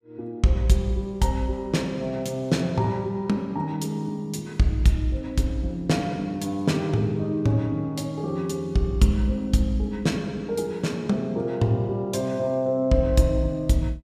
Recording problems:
none

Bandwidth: 15.5 kHz